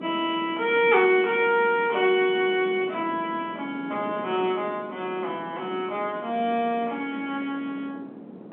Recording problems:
telephone audio; 220 Hz to 3.5 kHz, G.711
wind noise; below 450 Hz, SNR 15 dB

